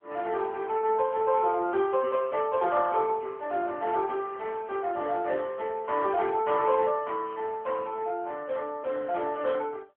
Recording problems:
telephone audio; 300 Hz to 2.6 kHz, AMR-NB

